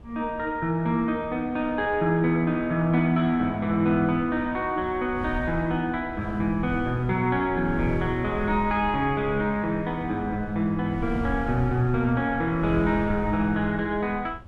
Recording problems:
wind on the microphone; below 120 Hz, SNR 14 dB

